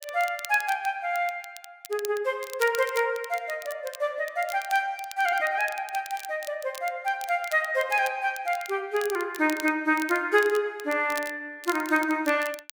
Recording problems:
crackle; vinyl, SNR 16 dB

